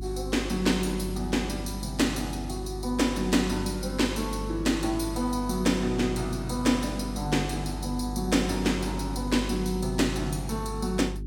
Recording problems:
mains hum; 50 Hz, harmonics up to 400 Hz, SNR 8 dB

